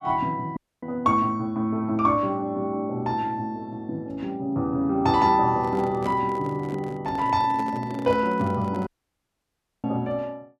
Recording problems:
audio cutting out; at 0.5 s and at 9 s for 1 s
microphone handling noise; from 5.5 to 9 s; peak -7 dB vs average level

